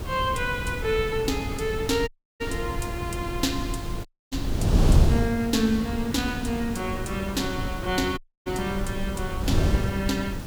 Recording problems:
background hiss; slope -4 dB per octave, SNR 14 dB
wind noise; below 160 Hz, SNR 1 dB
audio cutting out; at 2 s, at 4 s and at 8 s

